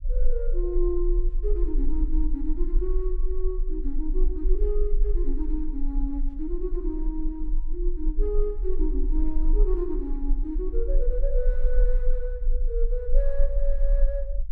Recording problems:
rumble; below 36 Hz, strongest tone 20 Hz, SNR -4 dB

